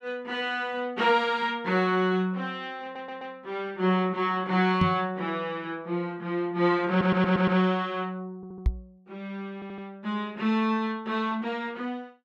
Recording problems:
audio stuttering; 4 times, first at 3 s
microphone bump; at 5 s and at 8.5 s; peak +6 dB vs average level

